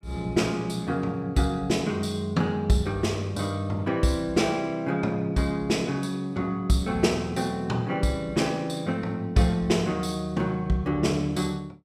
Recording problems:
none

